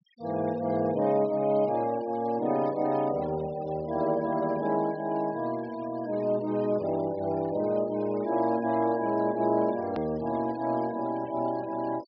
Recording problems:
low-pass filter; nothing above 5.5 kHz
noise reduction artefacts; signal-to-artefact ratio 23 dB
edit click; at 10 s

